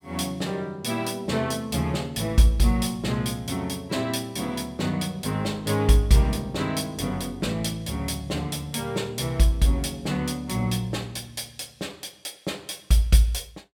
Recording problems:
none

